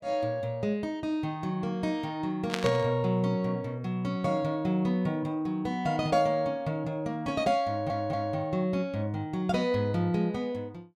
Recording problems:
burst of static; at 2.5 s; peak +2 dB vs average level
stutter; at 7.5 s

